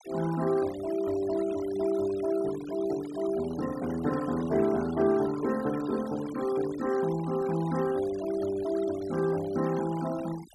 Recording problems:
denoising artefacts; signal-to-artefact ratio 17 dB

